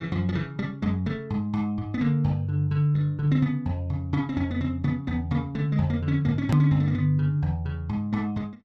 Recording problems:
hard cut with a click; at 6.5 s

